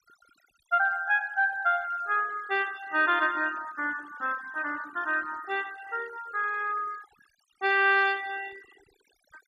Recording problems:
denoising artefacts; signal-to-artefact ratio 22 dB

